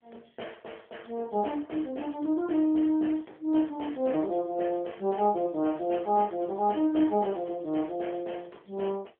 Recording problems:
telephone audio; 260 Hz to 3.4 kHz, AMR-NB

